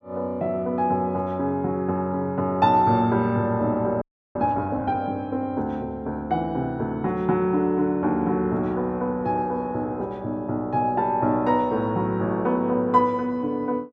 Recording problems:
audio freezing; at 4 s

